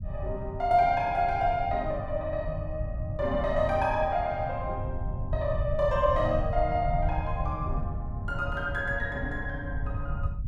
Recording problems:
low-frequency rumble; below 110 Hz, SNR 6 dB

